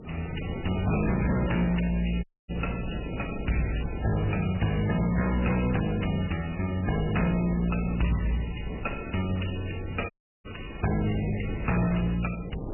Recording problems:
codec artefacts; MP3, log-spectral distance 7 dB, nothing above 2.9 kHz
distorted audio; hard clipping, signal-to-distortion ratio 11 dB
wind on the microphone; below 400 Hz, SNR 10 dB
audio cutting out; at 2 s and at 10 s

